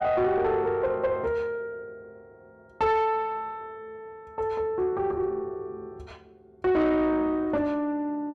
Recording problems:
distorted audio; soft clipping, signal-to-distortion ratio 11 dB

